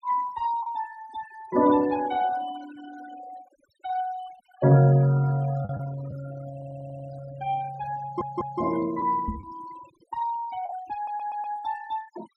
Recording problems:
denoising artefacts; signal-to-artefact ratio 18 dB
lost packets; 1.7% of the sound replaced, filled with the last packet
stutter; at 6.5 s, at 8 s and at 11 s
knock on the microphone; at 9.5 s; peak -2 dB vs average level

